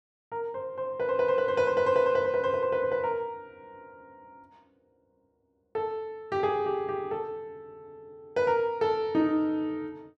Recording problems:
none

